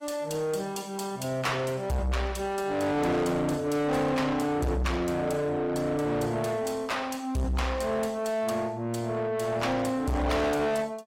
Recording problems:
lossy codec; AAC, log-spectral distance 3 dB, nothing above 16 kHz
distorted audio; soft clipping, signal-to-distortion ratio 6 dB

